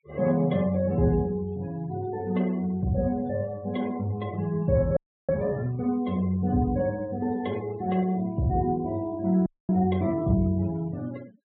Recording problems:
treble missing; nothing above 4 kHz
noise reduction artefacts; signal-to-artefact ratio 23 dB
frozen audio; at 5 s and at 9.5 s

